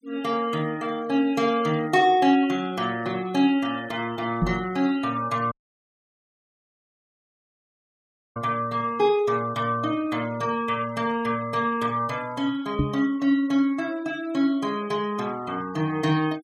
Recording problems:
noise reduction artefacts; signal-to-artefact ratio 23 dB
microphone thump; at 4.5 s and at 13 s; peak +5 dB vs average level
audio cutting out; at 5.5 s for 3 s

